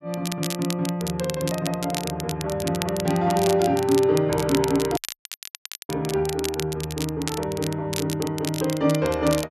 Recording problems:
crackle; vinyl, SNR 9 dB
dropout; at 5 s for 1 s

